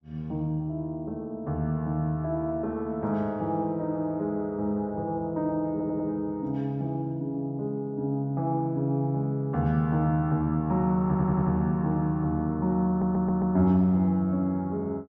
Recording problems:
stutter; at 5.5 s, at 11 s and at 13 s

